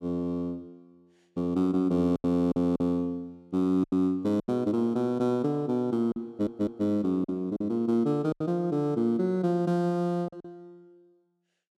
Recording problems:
packet loss; 6% of the sound replaced, filled with silence
audio stuttering; at 6.5 s

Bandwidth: 13.5 kHz